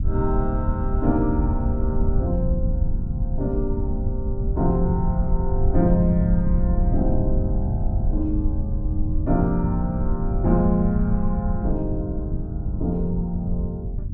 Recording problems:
rumble; below 94 Hz, SNR 0 dB

